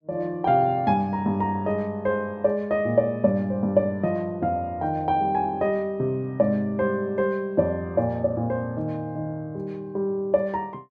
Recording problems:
none

